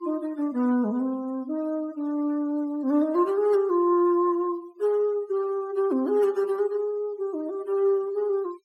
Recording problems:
denoising artefacts; signal-to-artefact ratio 26 dB

